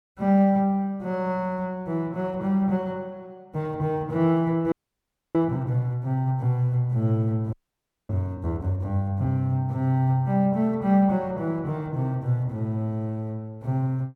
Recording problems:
frozen audio; at 4.5 s for 0.5 s and at 7.5 s for 0.5 s

